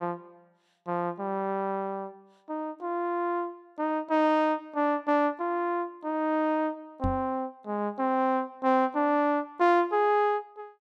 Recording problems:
knock on the microphone; at 7 s; peak 0 dB vs average level

